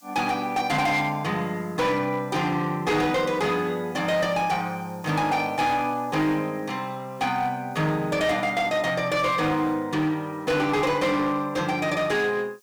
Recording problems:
distortion; hard clipping, uneven, signal-to-distortion ratio 11 dB
hiss; SNR 29 dB

